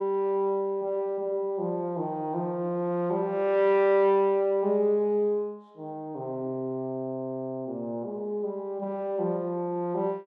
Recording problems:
none

